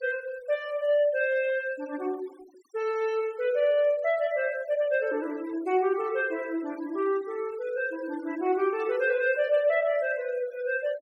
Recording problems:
denoising artefacts; signal-to-artefact ratio 23 dB

